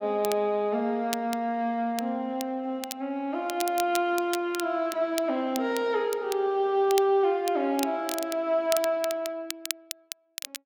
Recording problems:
crackling; vinyl, SNR 11 dB

